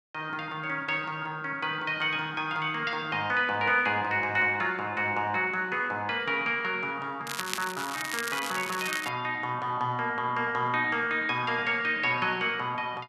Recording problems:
crackle; from 7.5 to 9 s; loose cable, SNR 8 dB

